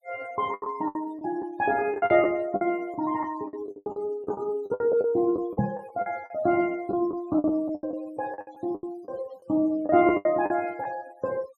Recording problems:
denoising artefacts; signal-to-artefact ratio 24 dB
lost packets; 14% of the sound replaced, filled with the last packet
microphone thump; at 5.5 s; peak +5 dB vs average level

